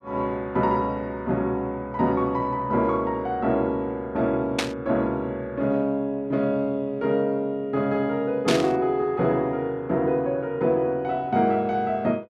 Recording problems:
static burst; at 4.5 s and at 8.5 s; peak +4 dB vs average level

